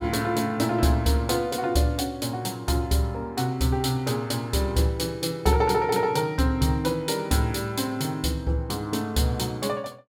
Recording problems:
none

